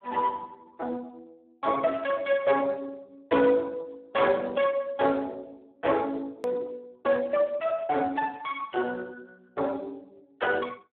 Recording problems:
telephone audio; 300 Hz to 2.9 kHz, Speex
edit click; at 6.5 s

